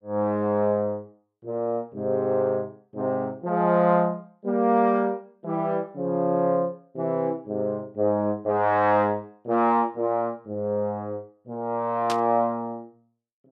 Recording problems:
burst of static; at 12 s; peak -3 dB vs average level

